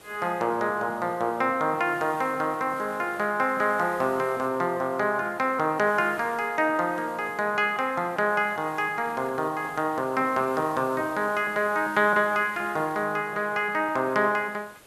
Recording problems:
background hiss; slope -4 dB per octave, SNR 22 dB

